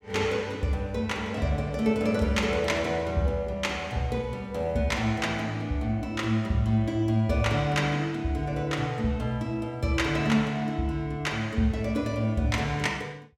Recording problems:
none

